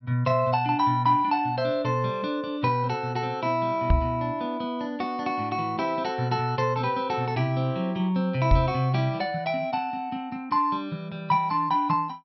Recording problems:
microphone thump; at 4 s and at 8.5 s; peak +7 dB vs average level

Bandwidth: 6 kHz